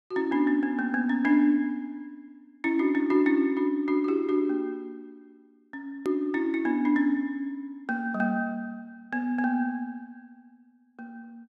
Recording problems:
hard cut with a click; at 6 s

